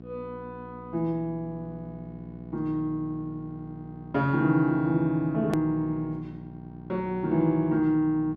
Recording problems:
mains hum; 60 Hz, harmonics up to 780 Hz, SNR 15 dB
click at an edit; at 5.5 s

